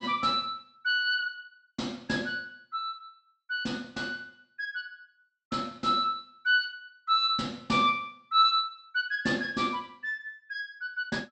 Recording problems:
low-pass filter; nothing above 8 kHz

